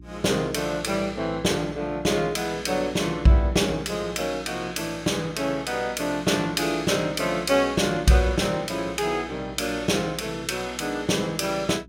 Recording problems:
electrical hum; 60 Hz, harmonics up to 360 Hz, SNR 21 dB

